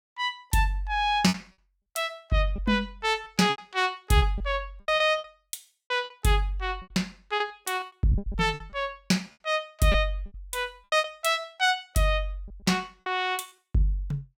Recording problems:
lost packets; 11% of the sound replaced, filled with repeated pitch periods

